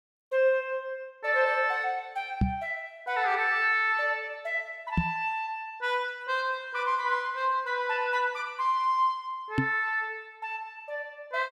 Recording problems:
microphone bump; at 2.5 s, at 5 s and at 9.5 s; peak +6 dB vs average level

